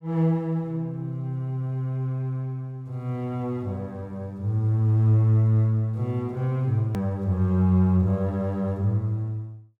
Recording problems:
hard cut with a click; at 7 s

